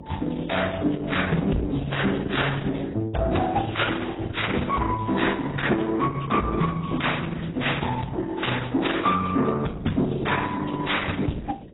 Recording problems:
lossy codec; Opus, then AAC, log-spectral distance 6 dB, nothing above 3.8 kHz
distorted audio; soft clipping, signal-to-distortion ratio 10 dB
electrical hum; 50 Hz, harmonics up to 550 Hz, SNR 19 dB

